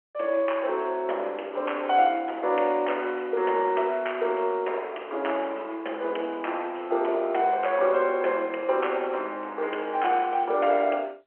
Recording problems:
phone line; 320 Hz to 3.2 kHz, G.711

